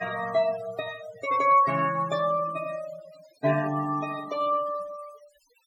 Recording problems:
denoising artefacts; signal-to-artefact ratio 16 dB

